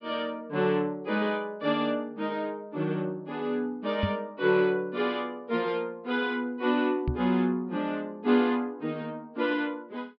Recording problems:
treble cut off; nothing above 5.5 kHz
knock on the microphone; at 4 s and at 7 s; peak +3 dB vs average level

